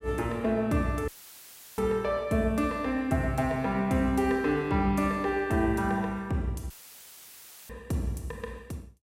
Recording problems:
audio cutting out; at 1 s for 0.5 s and at 6.5 s for 1 s; filled with static

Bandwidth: 16 kHz